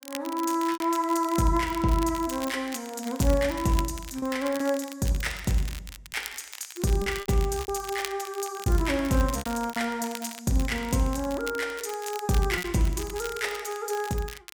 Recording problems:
crackle; vinyl, SNR 13 dB
packet loss; 5% of the sound replaced, filled with repeated pitch periods

